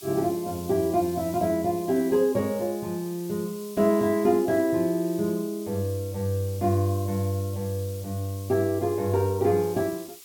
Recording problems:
background hiss; SNR 18 dB

